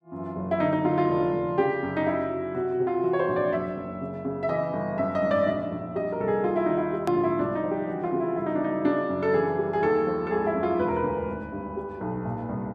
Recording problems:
edit click; at 7 s

